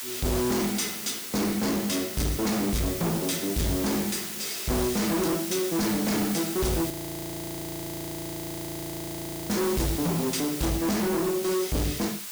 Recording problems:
distortion; hard clipping, signal-to-distortion ratio 6 dB
background hiss; slope +2 dB per octave, SNR 5 dB
frozen audio; at 7 s for 2.5 s

